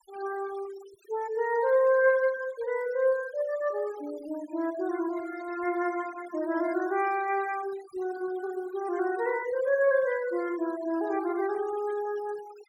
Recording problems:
denoising artefacts; signal-to-artefact ratio 19 dB

